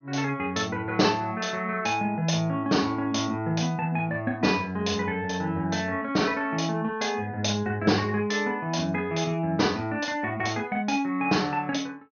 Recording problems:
treble cut off; nothing above 6.6 kHz

